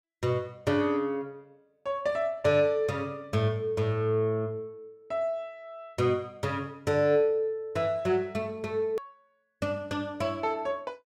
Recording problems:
click at an edit; at 9 s

